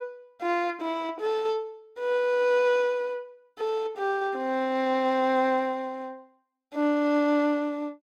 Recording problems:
none

